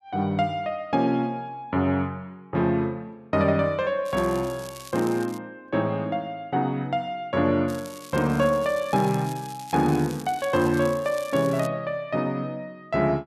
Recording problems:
crackle; from 4 to 5.5 s and from 7.5 to 12 s; loose cable, SNR 18 dB

